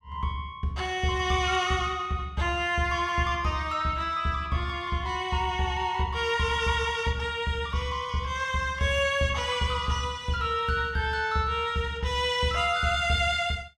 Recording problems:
none

